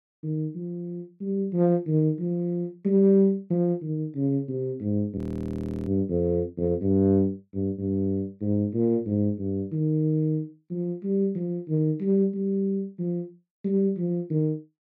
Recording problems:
frozen audio; at 5 s for 0.5 s

